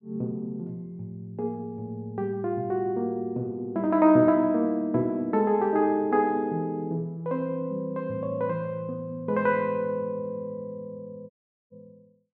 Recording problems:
audio cutting out; at 11 s

